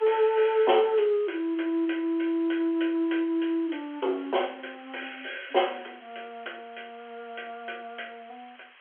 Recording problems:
phone line; 300 Hz to 3.3 kHz, G.711
background hiss; SNR 24 dB

